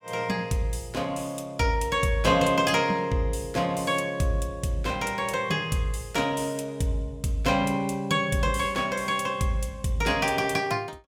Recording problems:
none

